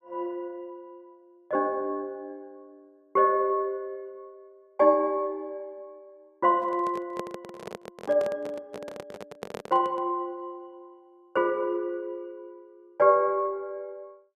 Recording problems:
handling noise; from 6.5 to 10 s; peak -5 dB vs average level

